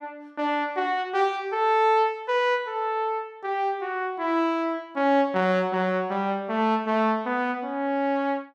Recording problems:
none

